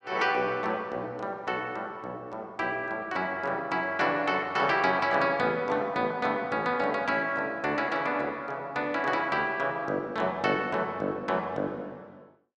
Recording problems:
none

